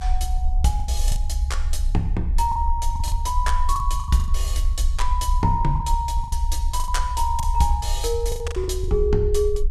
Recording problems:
low-frequency rumble; below 64 Hz, SNR 0 dB
packet loss; 10% of the sound replaced, filled with the last packet

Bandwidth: 14 kHz